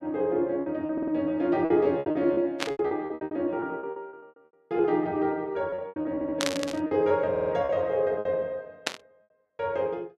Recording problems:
lost packets; 15% of the sound replaced, filled with repeated pitch periods
audio stuttering; at 1 s, at 6 s and at 7.5 s
burst of static; at 2.5 s, at 6.5 s and at 9 s; peak +4 dB vs average level

